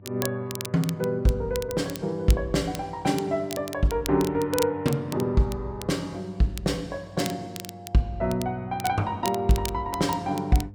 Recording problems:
hum; 50 Hz, harmonics up to 500 Hz, SNR 19 dB
crackle; vinyl, SNR 13 dB

